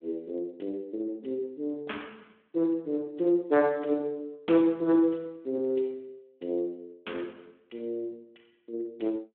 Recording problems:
phone line; 260 Hz to 3.4 kHz, Speex

